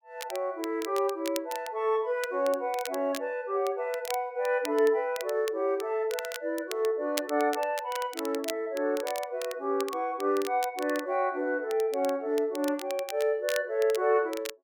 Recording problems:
crackle; vinyl, SNR 13 dB

